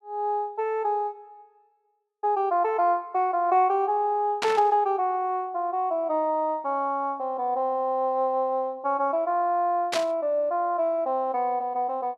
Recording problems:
static burst; at 4.5 s and at 10 s; peak +1 dB vs average level

